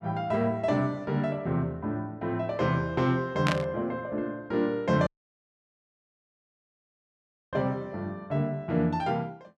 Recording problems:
burst of static; at 3.5 s; peak +4 dB vs average level
audio cutting out; at 5 s for 2.5 s

